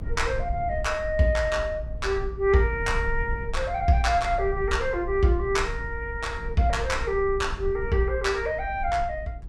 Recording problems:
low-frequency rumble; below 68 Hz, SNR 9 dB

